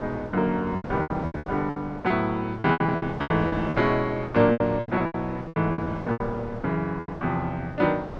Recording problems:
wind noise; below 730 Hz, SNR 12 dB
packet loss; 17% of the sound replaced, filled with repeated pitch periods

